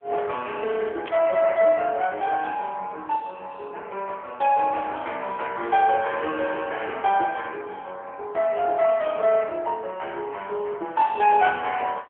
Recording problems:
telephone audio; 370 Hz to 3.4 kHz, AMR-NB
static burst; at 1 s; peak -8 dB vs average level

